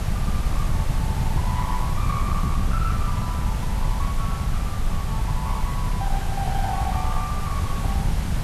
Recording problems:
distortion; hard clipping, uneven, signal-to-distortion ratio 10 dB
background hiss; SNR 3 dB
rumble; below 110 Hz, SNR -7 dB

